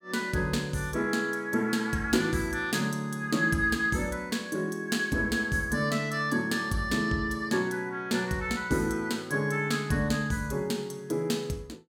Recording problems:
none

